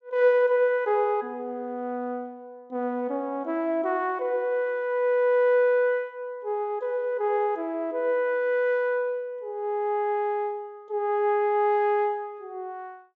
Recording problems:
low-pass filter; nothing above 7.6 kHz

